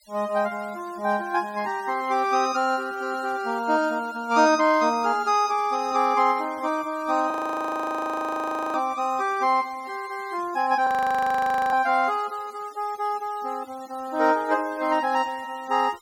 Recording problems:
denoising artefacts; signal-to-artefact ratio 23 dB
audio freezing; at 7.5 s for 1.5 s and at 11 s for 1 s

